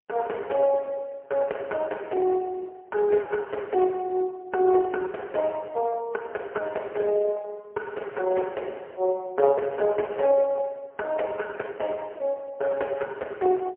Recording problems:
phone line; 320 Hz to 2 kHz, AMR-NB, then MP3

